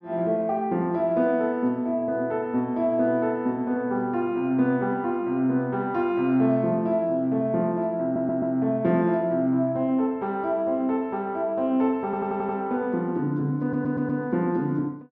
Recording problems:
audio stuttering; at 8 s, at 12 s and at 14 s

